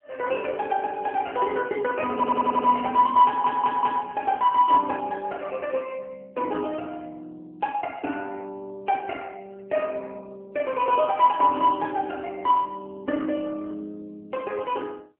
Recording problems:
phone line; 220 Hz to 3 kHz, AMR-NB
audio stuttering; at 2 s and at 3.5 s

